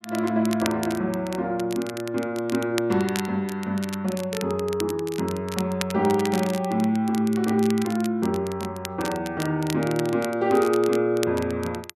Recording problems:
crackling; vinyl, SNR 13 dB

